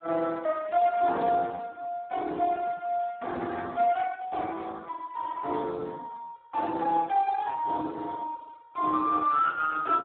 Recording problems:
telephone audio; 280 Hz to 3.8 kHz, Speex

